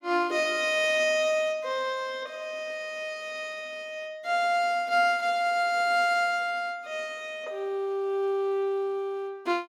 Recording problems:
none

